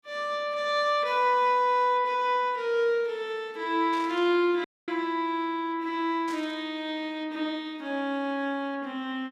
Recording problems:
static burst; at 4 s and at 6.5 s; peak -12 dB vs average level
audio cutting out; at 4.5 s

